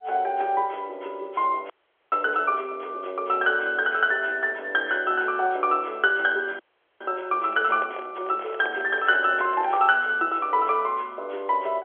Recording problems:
telephone audio; 300 Hz to 3.5 kHz, G.711
audio freezing; at 1.5 s and at 6.5 s
handling noise; from 7.5 to 10 s; peak -7 dB vs average level

